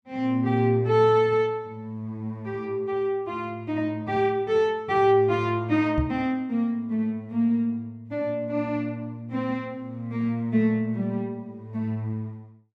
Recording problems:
microphone bump; at 6 s; peak +3 dB vs average level

